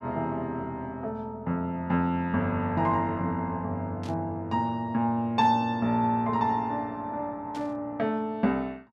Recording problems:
burst of static; at 4 s, at 5.5 s and at 7.5 s; peak -13 dB vs average level

